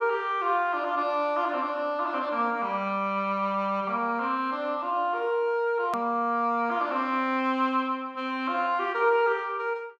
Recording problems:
edit click; at 6 s

